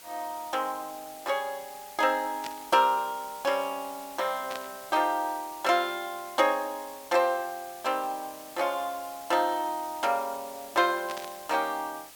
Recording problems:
hiss; slope 0 dB per octave, SNR 16 dB
burst of static; at 2.5 s, at 4.5 s and at 11 s; peak -5 dB vs average level

